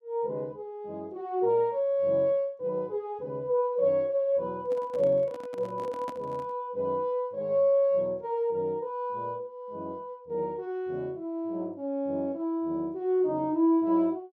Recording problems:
handling noise; from 4.5 to 6.5 s; peak -7 dB vs average level

